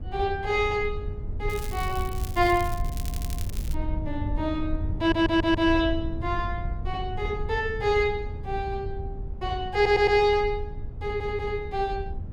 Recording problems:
rumble; below 94 Hz, SNR 7 dB
crackle; from 1.5 to 3.5 s; loose cable, SNR 16 dB
stutter; 4 times, first at 3 s

